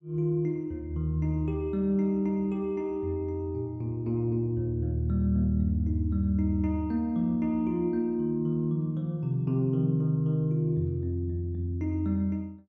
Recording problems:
none

